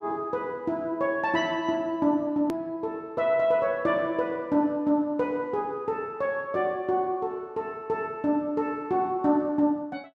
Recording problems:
edit click; at 2.5 s

